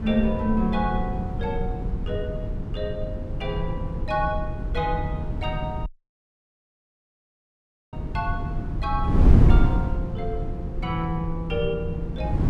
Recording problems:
wind on the microphone; below 130 Hz, SNR -2 dB
audio cutting out; at 6 s for 2 s

